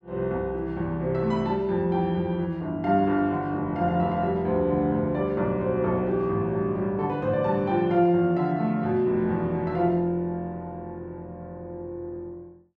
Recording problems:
none

